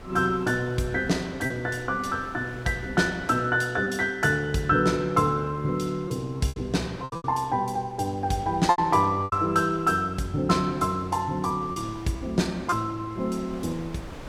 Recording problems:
wind on the microphone; below 1 kHz, SNR 21 dB
lost packets; 4% of the sound replaced, filled with repeated pitch periods

